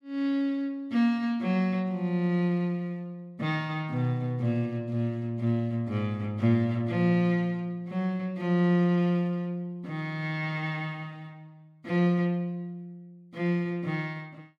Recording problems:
none

